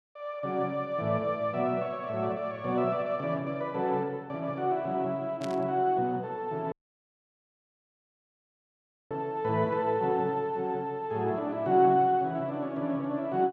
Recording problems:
static burst; at 5.5 s; peak -8 dB vs average level
audio cutting out; at 6.5 s for 2.5 s

